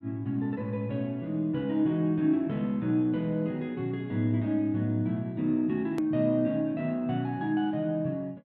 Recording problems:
edit click; at 6 s

